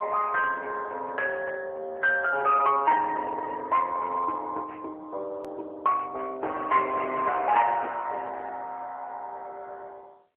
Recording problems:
phone line; 370 Hz to 3.1 kHz, AMR-NB
distorted audio; hard clipping, signal-to-distortion ratio 14 dB
edit click; at 5.5 s

